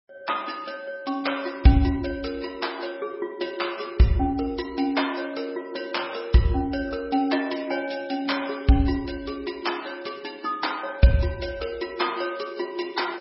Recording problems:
lossy codec; MP3, log-spectral distance 6 dB, nothing above 5.5 kHz

